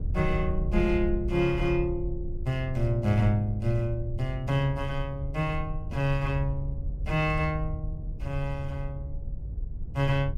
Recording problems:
wind noise; below 78 Hz, SNR 7 dB

